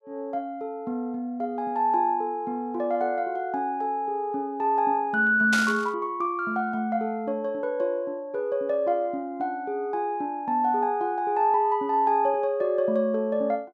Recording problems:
static burst; at 5.5 s; peak +1 dB vs average level

